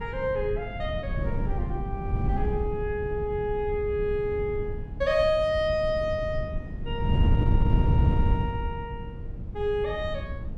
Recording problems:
wind on the microphone; below 130 Hz, SNR 1 dB

